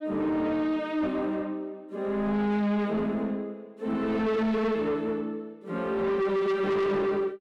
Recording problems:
distorted audio; soft clipping, signal-to-distortion ratio 7 dB

